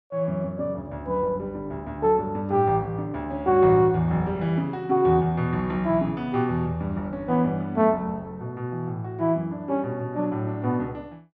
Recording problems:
none

